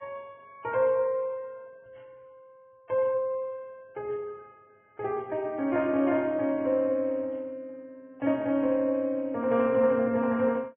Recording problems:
treble cut off; nothing above 3.2 kHz
codec artefacts; Vorbis, log-spectral distance 2 dB

